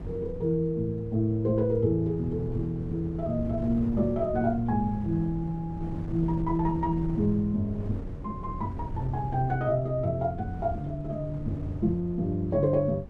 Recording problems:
wind on the microphone; below 180 Hz, SNR 10 dB

